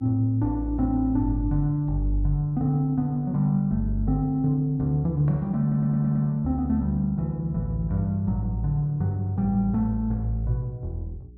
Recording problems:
mains hum; 60 Hz, harmonics up to 420 Hz, SNR 25 dB
stutter; at 5.5 s

